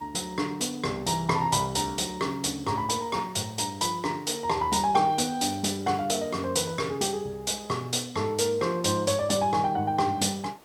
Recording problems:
background hiss; slope -5 dB per octave, SNR 27 dB

